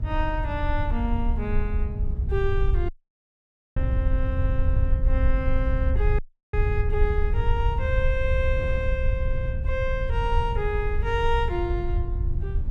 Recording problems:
rumble; below 72 Hz, SNR -3 dB
wind on the microphone; below 260 Hz, SNR 16 dB
audio cutting out; at 3 s for 1 s and at 6 s

